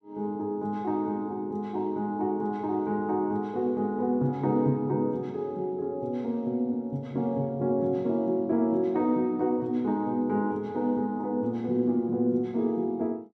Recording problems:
none

